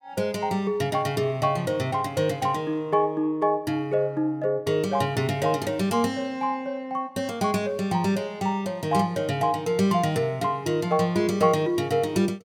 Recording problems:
none

